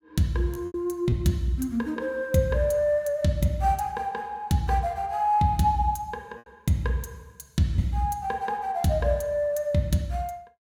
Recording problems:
lost packets; 2% of the sound replaced, filled with repeated pitch periods

